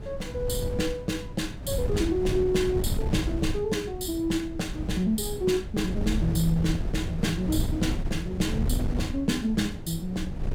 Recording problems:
wind on the microphone; below 140 Hz, SNR 4 dB

